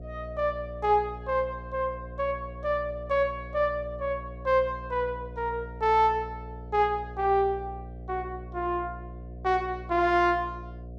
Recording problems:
electrical hum; 60 Hz, harmonics up to 720 Hz, SNR 14 dB

